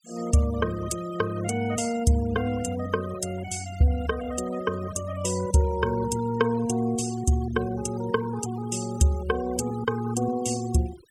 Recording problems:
denoising artefacts; signal-to-artefact ratio 16 dB

